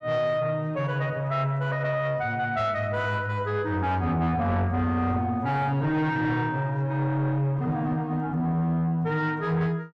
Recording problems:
distorted audio; soft clipping, signal-to-distortion ratio 11 dB

